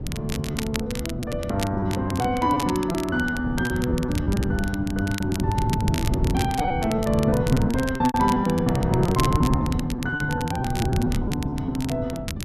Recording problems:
wind noise; below 210 Hz, SNR 3 dB
crackling; vinyl, SNR 11 dB
lost packets; 14% of the sound replaced, filled with repeated pitch periods

